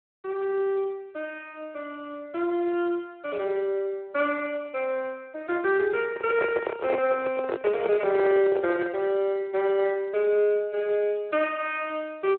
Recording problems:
phone line; 300 Hz to 3.1 kHz, Speex
microphone handling noise; from 6 to 9 s; peak +3 dB vs average level

